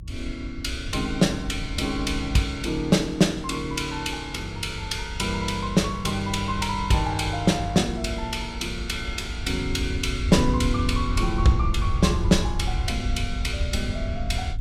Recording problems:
low-frequency rumble; below 90 Hz, SNR 6 dB

